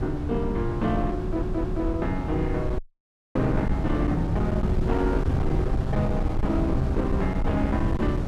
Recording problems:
distortion; hard clipping, signal-to-distortion ratio 11 dB
wind on the microphone; below 160 Hz, SNR 1 dB
audio stuttering; at 1 s
audio cutting out; at 3 s for 0.5 s

